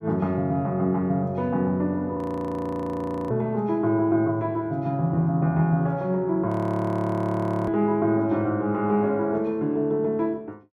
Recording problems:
audio freezing; at 2 s for 1 s and at 6.5 s for 1 s

